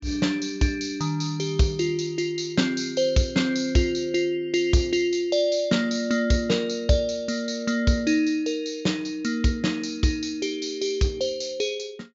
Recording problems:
treble cut off; nothing above 7.5 kHz

